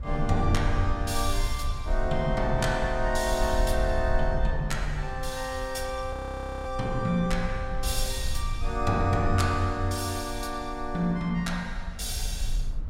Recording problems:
rumble; below 56 Hz, SNR 5 dB
frozen audio; at 6 s for 0.5 s

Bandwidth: 16 kHz